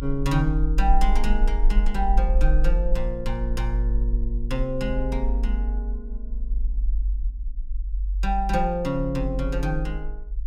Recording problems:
low-frequency rumble; below 48 Hz, SNR -1 dB

